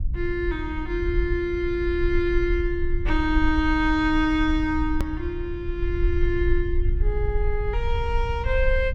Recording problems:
hum; 60 Hz, harmonics up to 600 Hz, SNR 19 dB
low-frequency rumble; below 60 Hz, SNR 3 dB
click at an edit; at 5 s

